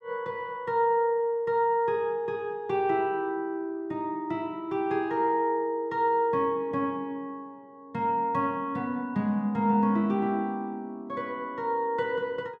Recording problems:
none

